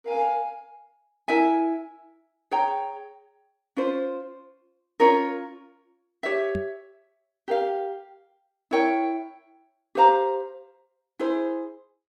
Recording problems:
knock on the microphone; at 6.5 s; peak -3 dB vs average level

